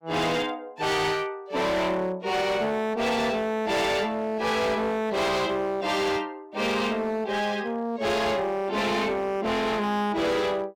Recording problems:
distortion; hard clipping, signal-to-distortion ratio 8 dB

